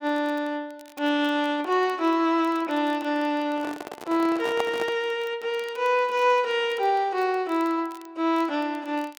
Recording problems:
crackle; vinyl, SNR 28 dB
microphone handling noise; from 3.5 to 5 s; peak 0 dB vs average level

